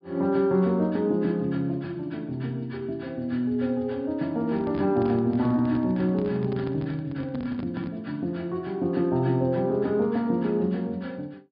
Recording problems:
low-pass filter; nothing above 5.1 kHz
handling noise; from 4.5 to 8 s; peak -6 dB vs average level

